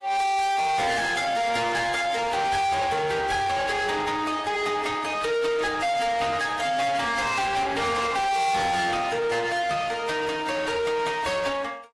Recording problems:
codec artefacts; AAC, then AAC, log-spectral distance 4 dB, nothing above 11.3 kHz
distorted audio; soft clipping, signal-to-distortion ratio 6 dB

